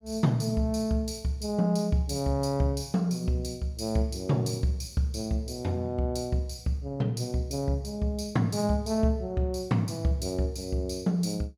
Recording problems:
none

